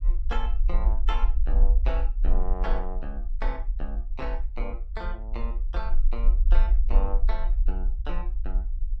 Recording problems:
low-frequency rumble; below 44 Hz, SNR -10 dB

